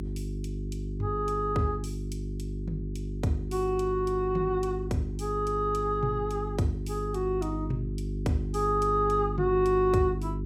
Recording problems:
electrical hum; 50 Hz, harmonics up to 400 Hz, SNR 6 dB

